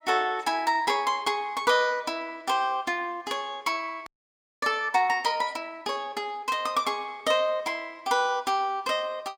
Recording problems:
audio freezing; at 4 s for 0.5 s

